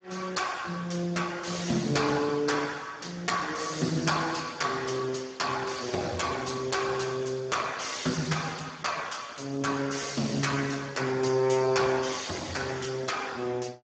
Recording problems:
lossy codec; Speex, log-spectral distance 6 dB, nothing above 7.3 kHz

